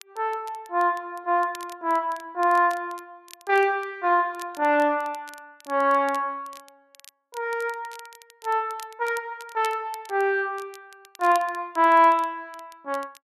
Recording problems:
crackle; vinyl, SNR 24 dB

